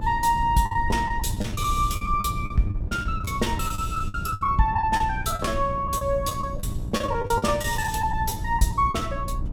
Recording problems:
hum; 60 Hz, harmonics up to 960 Hz, SNR 12 dB
rumble; below 100 Hz, SNR 8 dB
packet loss; 14% of the sound replaced, filled with the last packet

